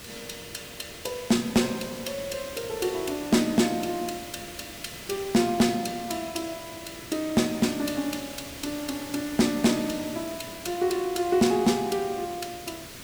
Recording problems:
distortion; hard clipping, signal-to-distortion ratio 12 dB
background hiss; SNR 13 dB

